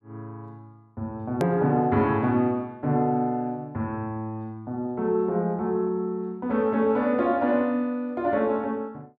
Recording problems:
click at an edit; at 1.5 s

